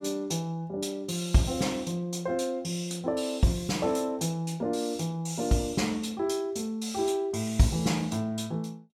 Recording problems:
none

